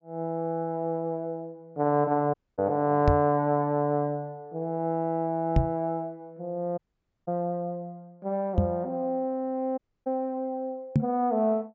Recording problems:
low-pass filter; nothing above 8 kHz
dropout; at 2.5 s, at 7 s and at 10 s
microphone thump; 4 times, first at 3 s; peak +9 dB vs average level

